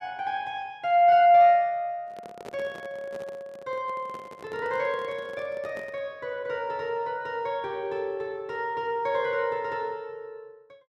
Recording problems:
microphone handling noise; from 2 to 6 s; peak -10 dB vs average level

